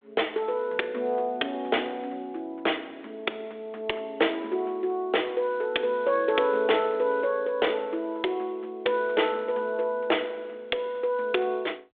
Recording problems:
telephone audio; 280 Hz to 3.6 kHz, G.726

